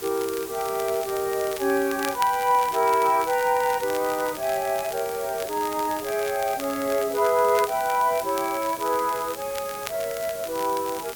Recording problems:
hiss; slope -3 dB per octave, SNR 13 dB
crackling; vinyl, SNR 16 dB

